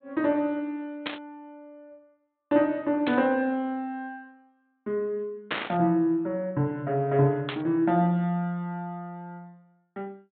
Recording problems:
low-pass filter; nothing above 4 kHz
burst of static; 4 times, first at 1 s; peak +2 dB vs average level

